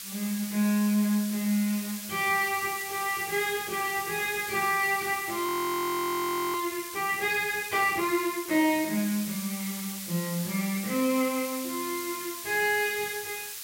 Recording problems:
hiss; SNR 8 dB
frozen audio; at 5.5 s for 1 s

